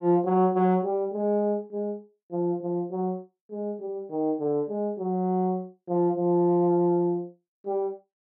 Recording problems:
none

